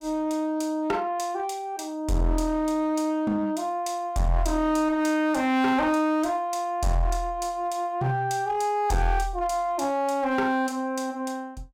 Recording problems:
distorted audio; hard clipping, uneven, signal-to-distortion ratio 9 dB

